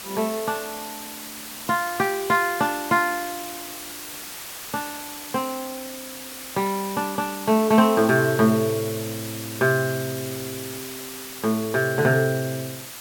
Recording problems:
background hiss; slope 0 dB per octave, SNR 11 dB

